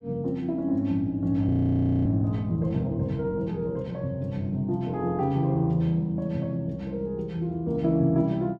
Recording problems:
frozen audio; at 1.5 s for 0.5 s

